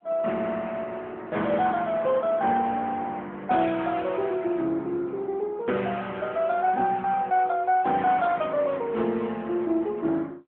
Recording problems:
telephone audio; 150 Hz to 3.7 kHz, AMR-NB

